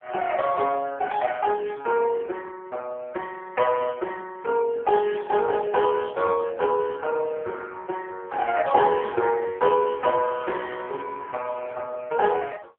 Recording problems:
phone line; 340 Hz to 2.5 kHz, AMR-NB

